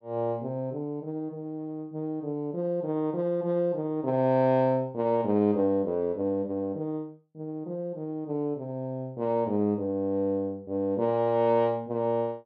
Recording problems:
none

